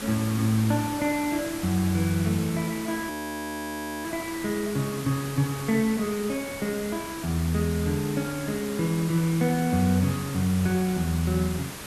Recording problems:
background hiss; slope -3 dB per octave, SNR 10 dB
audio freezing; at 3 s for 1 s

